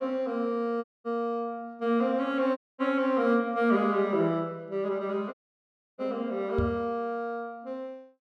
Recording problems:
dropout; at 1 s, at 2.5 s and at 5.5 s for 0.5 s
knock on the microphone; at 6.5 s; peak +2 dB vs average level

